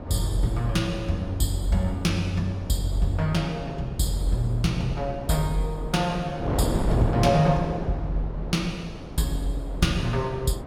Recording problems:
wind noise; below 510 Hz, SNR 8 dB

